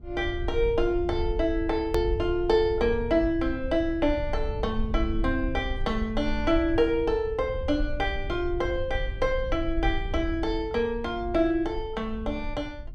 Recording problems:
low-frequency rumble; below 68 Hz, SNR 8 dB
click at an edit; at 2 s

